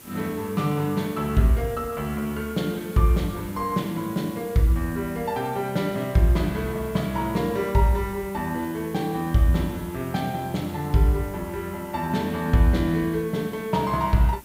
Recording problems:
hiss; SNR 20 dB

